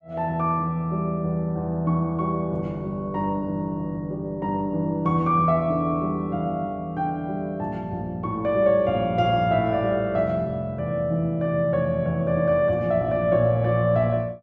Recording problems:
none

